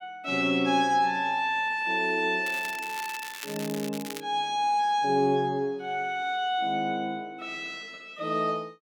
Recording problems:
crackle; from 2.5 to 4 s; loose cable, SNR 12 dB

